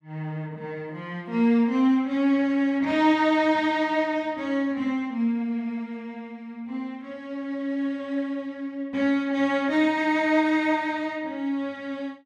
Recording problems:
none

